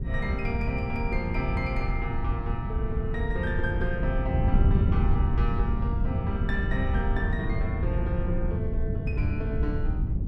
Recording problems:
wind on the microphone; below 120 Hz, SNR -4 dB

